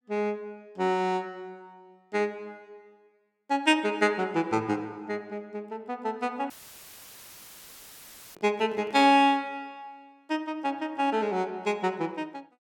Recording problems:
dropout; at 6.5 s for 2 s; filled with static
microphone handling noise; at 8.5 s; peak -16 dB vs average level

